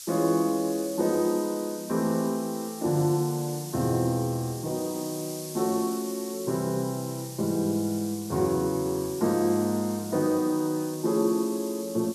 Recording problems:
background hiss; SNR 13 dB

